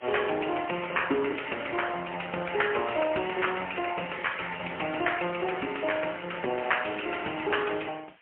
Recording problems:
telephone audio; 260 Hz to 3.1 kHz, AMR-NB, then MP3
background hiss; SNR 27 dB

